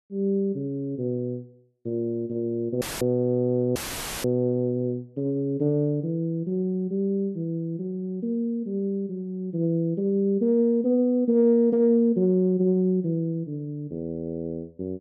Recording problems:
audio cutting out; at 3 s and at 4 s; filled with static

